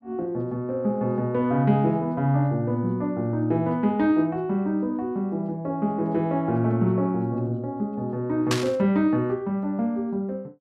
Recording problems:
static burst; at 8.5 s; peak +3 dB vs average level

